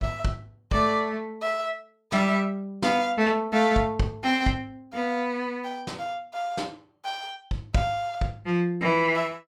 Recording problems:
none

